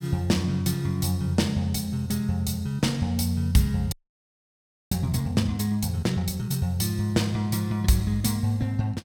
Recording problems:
audio freezing; at 4 s for 1 s

